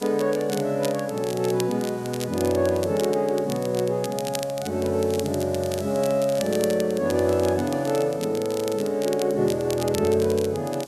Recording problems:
background hiss; SNR 22 dB
crackling; vinyl, SNR 14 dB

